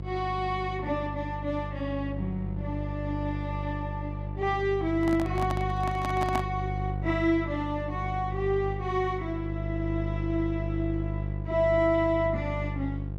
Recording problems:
hum; 50 Hz, harmonics up to 550 Hz, SNR 4 dB
handling noise; from 5 to 6.5 s; peak +2 dB vs average level

